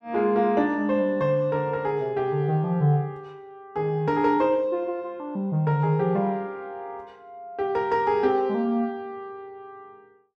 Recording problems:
none

